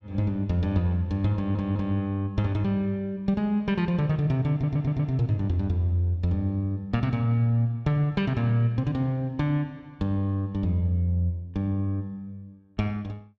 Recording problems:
stutter; at 1.5 s and at 4.5 s

